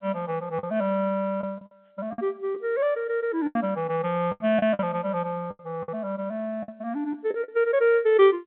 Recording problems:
telephone audio; 240 Hz to 3.5 kHz, G.711
lost packets; 8% of the sound replaced, filled with the last packet

